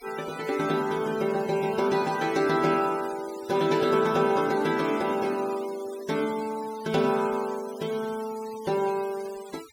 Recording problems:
noise reduction artefacts; signal-to-artefact ratio 18 dB

